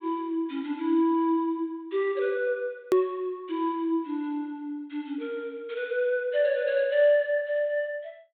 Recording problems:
low-pass filter; nothing above 4 kHz
hard cut with a click; at 3 s

